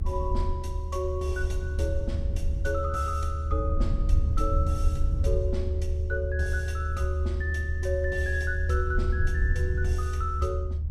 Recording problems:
low-frequency rumble; below 76 Hz, SNR -3 dB

